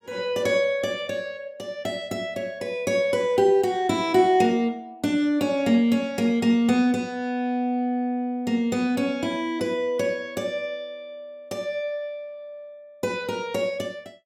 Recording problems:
none

